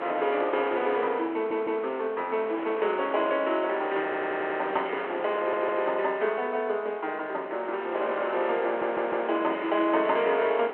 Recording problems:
telephone audio; 320 Hz to 3.3 kHz, G.726
wind on the microphone; below 1.5 kHz, SNR 10 dB
stutter; 4 times, first at 1.5 s

